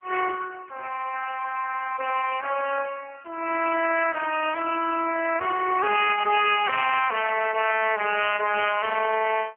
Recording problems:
telephone audio; 280 Hz to 3.1 kHz, AMR-NB

